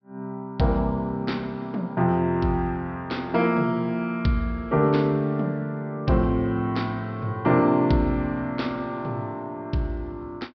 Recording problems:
treble cut off; nothing above 5.5 kHz

